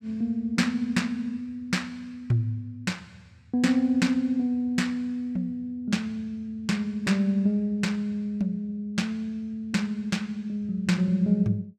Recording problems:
none

